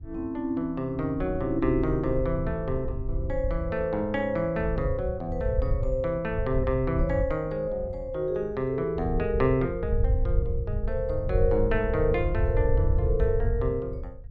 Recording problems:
wind noise; below 90 Hz, SNR 3 dB

